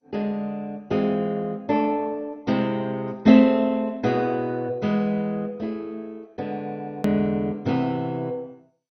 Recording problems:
codec artefacts; MP2, log-spectral distance 2 dB, nothing above 17.1 kHz
click at an edit; at 7 s

